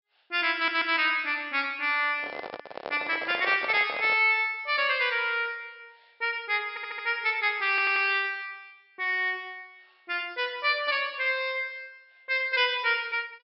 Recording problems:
treble missing; nothing above 5.4 kHz
stutter; at 0.5 s, at 6.5 s and at 7.5 s
microphone handling noise; from 2 to 4 s; peak -5 dB vs average level

